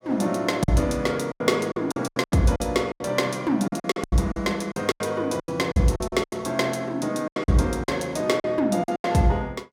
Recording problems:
lost packets; 15% of the sound replaced, filled with silence

